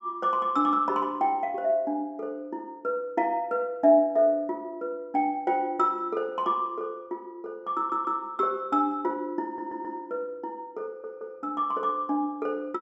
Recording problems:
audio stuttering; at 8 s, at 9.5 s and at 11 s

